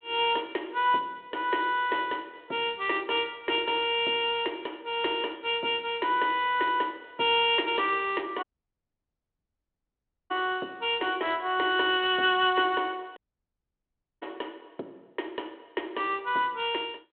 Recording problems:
telephone audio; 240 Hz to 3.4 kHz, G.726
dropout; at 8.5 s for 2 s and at 13 s for 1 s

